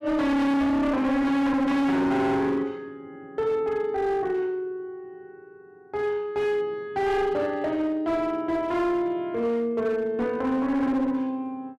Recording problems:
distorted audio; hard clipping, signal-to-distortion ratio 7 dB

